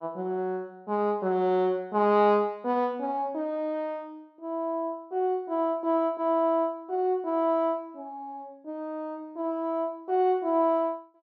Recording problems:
none

